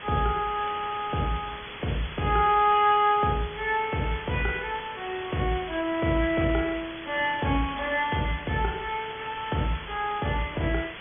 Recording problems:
treble missing; nothing above 3.4 kHz
hiss; SNR 12 dB

